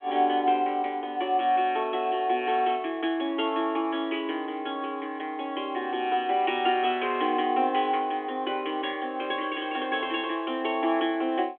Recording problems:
phone line; 260 Hz to 3.4 kHz, G.726

